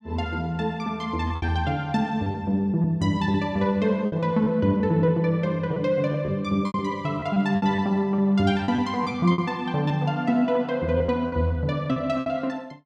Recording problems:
packet loss; 8% of the sound replaced, filled with repeated pitch periods

